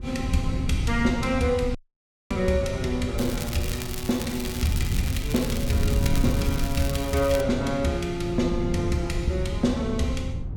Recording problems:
wind noise; below 130 Hz, SNR 4 dB
audio cutting out; at 2 s for 0.5 s
crackle; from 3 to 7.5 s; loose cable, SNR 9 dB

